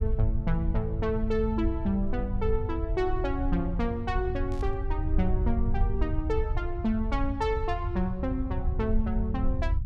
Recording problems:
low-frequency rumble; below 78 Hz, SNR 1 dB
burst of static; at 4.5 s; peak -16 dB vs average level

